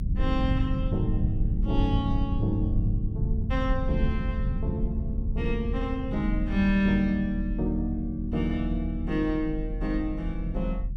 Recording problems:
low-frequency rumble; below 92 Hz, strongest tone 40 Hz, SNR 2 dB

